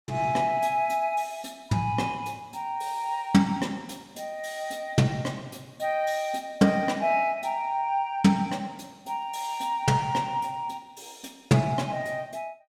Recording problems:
none

